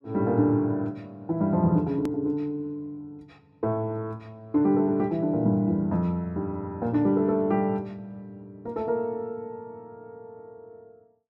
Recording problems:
click at an edit; at 2 s

